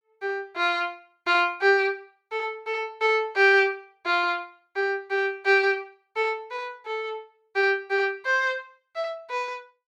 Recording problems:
none

